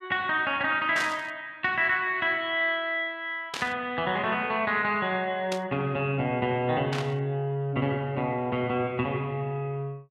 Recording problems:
burst of static; 4 times, first at 1 s; peak -2 dB vs average level

